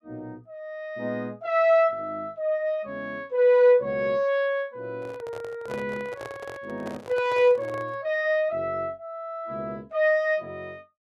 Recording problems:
microphone handling noise; from 5 to 8 s; peak -9 dB vs average level

